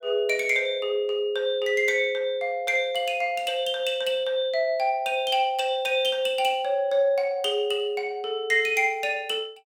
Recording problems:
none

